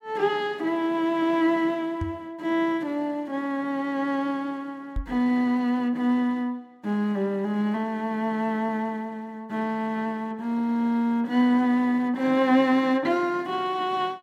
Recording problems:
microphone thump; at 2 s and at 5 s; peak -2 dB vs average level

